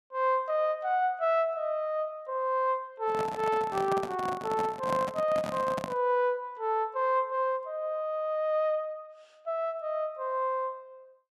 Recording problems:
microphone handling noise; from 3 to 6 s; peak -2 dB vs average level

